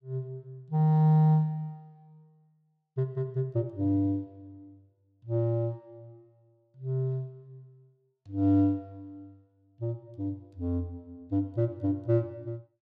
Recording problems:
none

